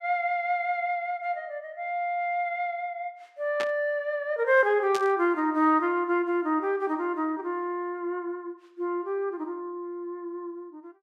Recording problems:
static burst; at 3.5 s and at 5 s; peak -2 dB vs average level

